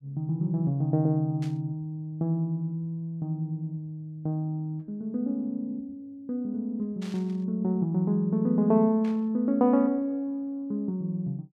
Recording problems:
burst of static; at 1.5 s, at 7 s and at 9 s; peak -14 dB vs average level

